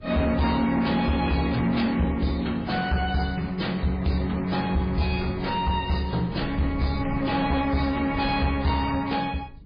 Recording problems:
lossy codec; MP3, then AAC, log-spectral distance 4 dB, nothing above 4.4 kHz
distortion; soft clipping, signal-to-distortion ratio 10 dB
wind noise; below 180 Hz, SNR 14 dB

